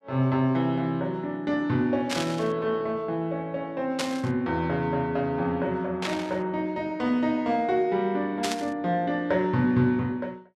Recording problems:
static burst; 4 times, first at 2 s; peak +1 dB vs average level

